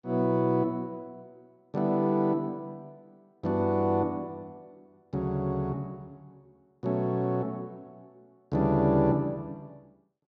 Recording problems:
none

